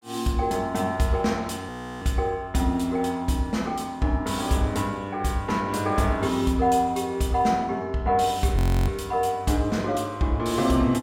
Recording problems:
frozen audio; at 1.5 s and at 8.5 s

